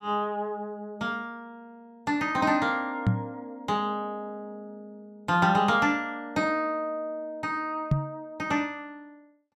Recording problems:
knock on the microphone; at 3 s and at 8 s; peak +8 dB vs average level

